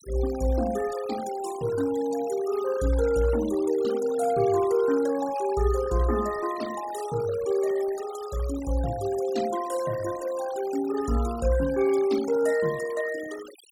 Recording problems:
denoising artefacts; signal-to-artefact ratio 16 dB

